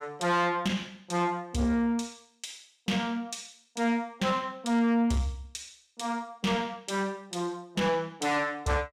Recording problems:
distorted audio; soft clipping, signal-to-distortion ratio 12 dB

